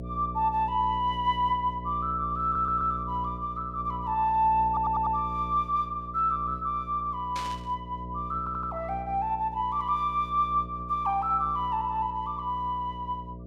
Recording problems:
hum; 60 Hz, harmonics up to 660 Hz, SNR 12 dB
stutter; at 2.5 s, at 4.5 s and at 8.5 s
burst of static; at 7.5 s; peak -7 dB vs average level

